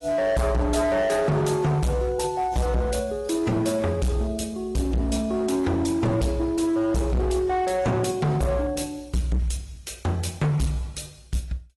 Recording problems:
lossy codec; AAC, log-spectral distance 3 dB, nothing above 11.3 kHz
distorted audio; hard clipping, signal-to-distortion ratio 7 dB

